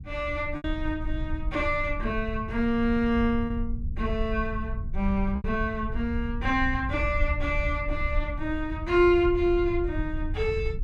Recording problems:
low-frequency rumble; below 76 Hz, SNR 6 dB
packet loss; 1.9% of the sound replaced, filled with repeated pitch periods

